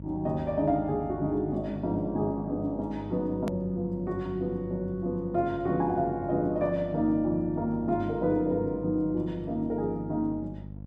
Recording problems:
electrical hum; 50 Hz, harmonics up to 600 Hz, SNR 13 dB
edit click; at 3.5 s

